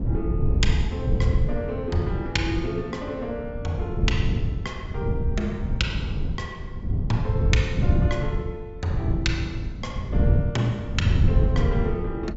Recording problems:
treble missing; nothing above 8 kHz
wind noise; below 130 Hz, SNR -3 dB

